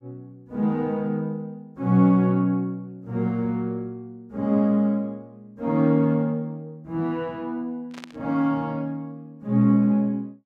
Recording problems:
burst of static; at 8 s; peak -11 dB vs average level

